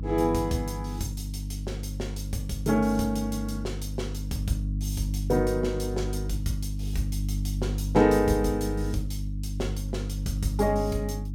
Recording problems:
hum; 50 Hz, harmonics up to 300 Hz, SNR 3 dB

